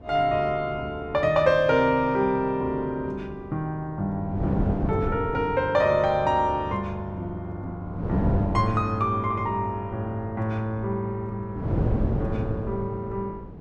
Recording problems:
wind noise; below 300 Hz, SNR 7 dB

